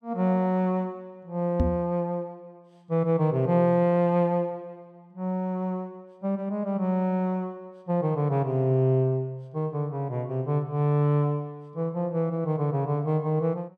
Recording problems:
knock on the microphone; at 1.5 s; peak +5 dB vs average level

